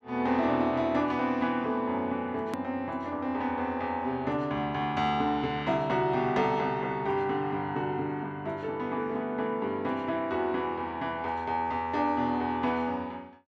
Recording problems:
click at an edit; at 2.5 s

